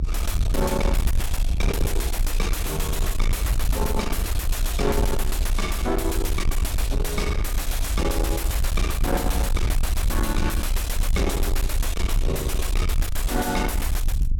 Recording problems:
distorted audio; soft clipping, signal-to-distortion ratio 6 dB
rumble; below 66 Hz, SNR -1 dB

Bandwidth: 17 kHz